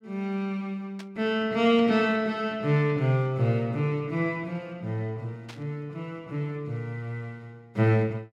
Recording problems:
burst of static; at 1 s and at 5.5 s; peak -11 dB vs average level

